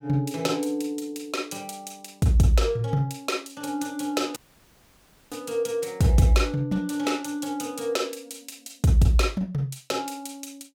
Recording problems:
audio cutting out; at 4.5 s for 1 s

